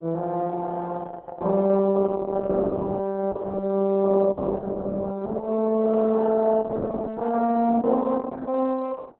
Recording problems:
codec artefacts; Opus, log-spectral distance 3 dB, nothing above 4 kHz

